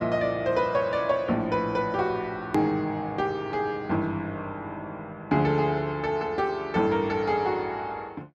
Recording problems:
hard cut with a click; at 2.5 s

